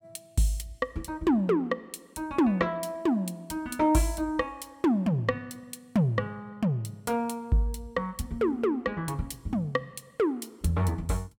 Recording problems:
none

